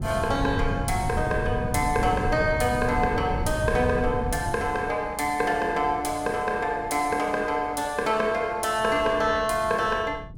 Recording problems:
wind on the microphone; below 160 Hz, SNR 7 dB

